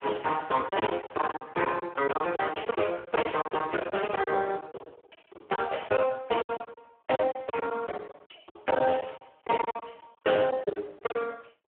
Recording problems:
phone line; 320 Hz to 3.3 kHz, Speex
packet loss; 15% of the sound replaced, filled with silence

